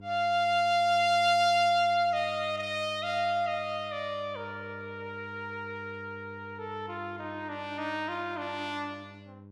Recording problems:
electrical hum; 50 Hz, harmonics up to 600 Hz, SNR 19 dB

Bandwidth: 16 kHz